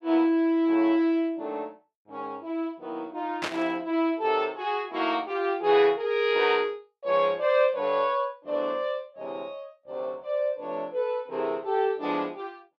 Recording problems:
burst of static; at 3.5 s; peak 0 dB vs average level

